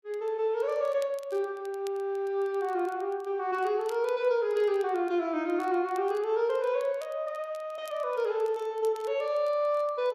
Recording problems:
crackle; vinyl, SNR 27 dB

